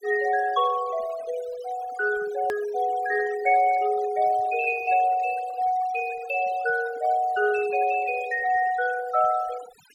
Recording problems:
denoising artefacts; signal-to-artefact ratio 17 dB
click at an edit; at 2.5 s

